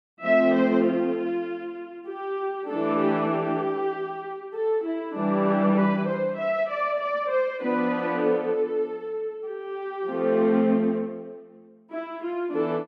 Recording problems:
none

